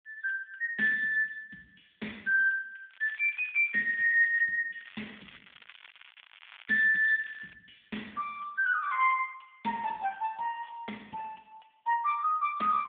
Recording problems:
telephone audio; 170 Hz to 3.5 kHz, AMR-NB
crackle; from 3 to 4.5 s and from 5 to 7.5 s; loose cable, SNR 24 dB

